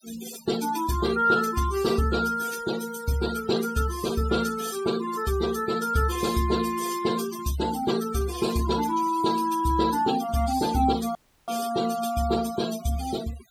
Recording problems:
noise reduction artefacts; signal-to-artefact ratio 13 dB
dropout; at 11 s

